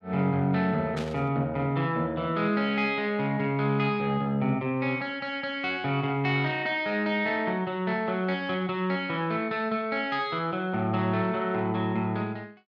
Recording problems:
burst of static; at 1 s; peak -7 dB vs average level

